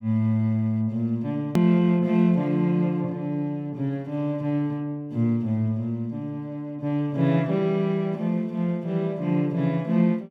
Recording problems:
click at an edit; at 1.5 s

